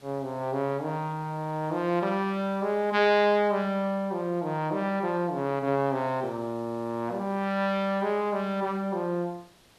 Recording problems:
background hiss; slope -3 dB per octave, SNR 28 dB

